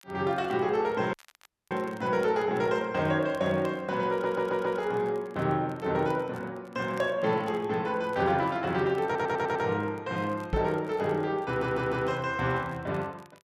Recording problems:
crackle; vinyl, SNR 29 dB
dropout; at 1 s for 0.5 s
audio stuttering; at 4 s, at 9 s and at 11 s
microphone thump; at 11 s; peak +1 dB vs average level

